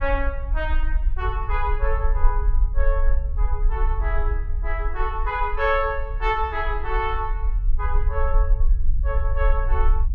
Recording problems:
rumble; below 46 Hz, strongest tone 24 Hz, SNR -2 dB

